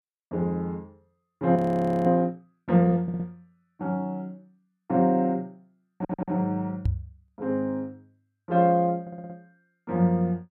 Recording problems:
frozen audio; at 1.5 s for 0.5 s
audio stuttering; at 3 s, at 6 s and at 9 s
microphone bump; at 7 s; peak +3 dB vs average level

